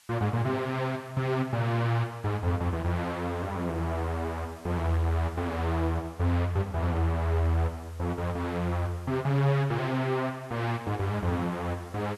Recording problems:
hiss; SNR 26 dB

